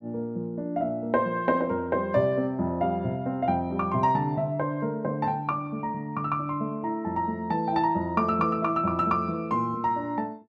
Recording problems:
none

